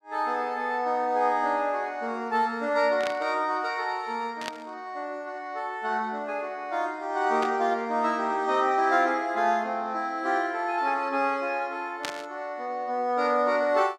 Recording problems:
static burst; 4 times, first at 3 s; peak -1 dB vs average level

